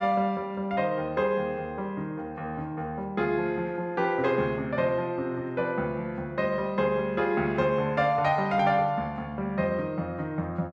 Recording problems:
none

